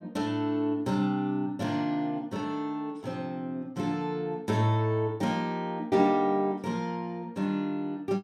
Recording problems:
none

